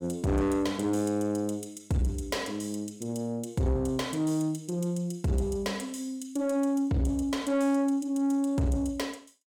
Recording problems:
distorted audio; soft clipping, signal-to-distortion ratio 11 dB

